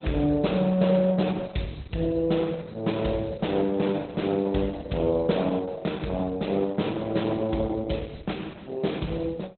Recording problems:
lossy compression; Opus, log-spectral distance 5 dB, nothing above 4 kHz

